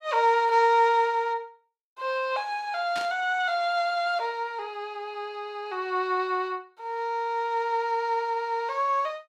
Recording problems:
burst of static; at 3 s; peak -6 dB vs average level

